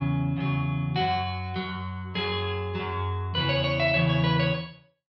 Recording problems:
none

